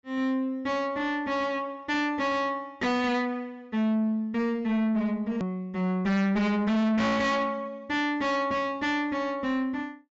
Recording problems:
low-pass filter; nothing above 8 kHz
distorted audio; soft clipping, signal-to-distortion ratio 6 dB
hard cut with a click; at 5.5 s

